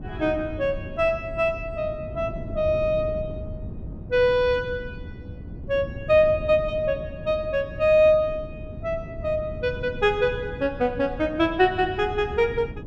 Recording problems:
wind noise; below 190 Hz, SNR 13 dB

